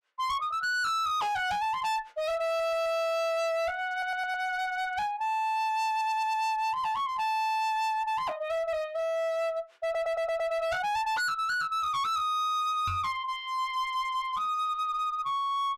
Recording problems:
distortion; hard clipping, uneven, signal-to-distortion ratio 6 dB
audio stuttering; 4 times, first at 2.5 s
microphone bump; at 13 s; peak -1 dB vs average level

